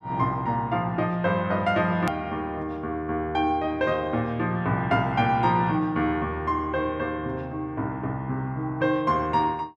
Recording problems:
edit click; at 2 s

